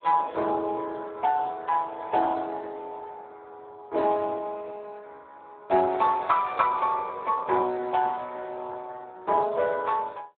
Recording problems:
telephone audio; 300 Hz to 3.6 kHz, Speex

